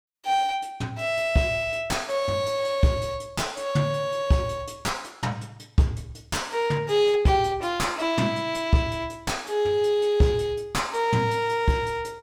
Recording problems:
distorted audio; soft clipping, signal-to-distortion ratio 9 dB

